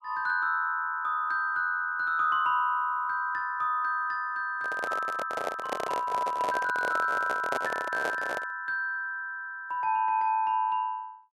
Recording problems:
handling noise; from 4.5 to 8.5 s; peak +1 dB vs average level

